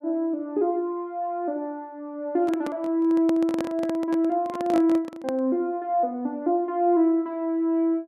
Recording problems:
microphone handling noise; from 2.5 to 5.5 s; peak -3 dB vs average level

